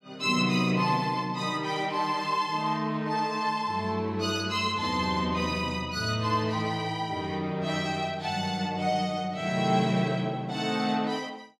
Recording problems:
none

